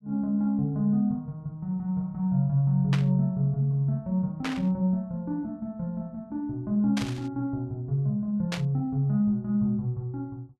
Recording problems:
burst of static; 4 times, first at 3 s; peak -1 dB vs average level

